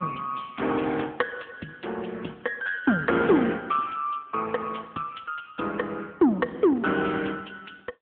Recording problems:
telephone audio; 170 Hz to 3.4 kHz, AMR-NB

